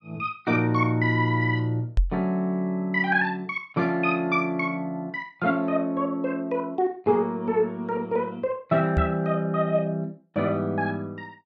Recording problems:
microphone bump; at 2 s and at 9 s; peak +6 dB vs average level

